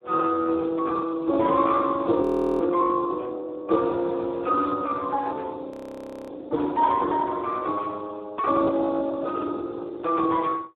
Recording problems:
phone line; 260 Hz to 2 kHz, Speex
audio freezing; at 2 s and at 5.5 s for 0.5 s

